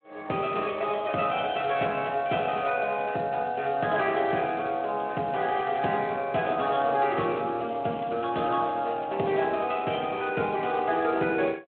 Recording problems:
telephone audio; 260 Hz to 3.7 kHz, Speex

